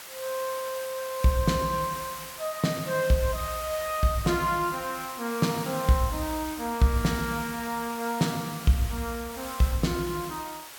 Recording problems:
hiss; slope 0 dB per octave, SNR 11 dB

